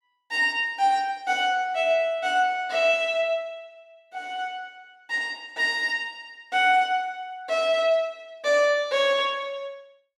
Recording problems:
none

